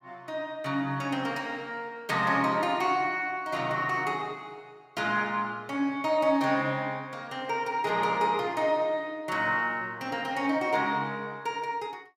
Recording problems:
none

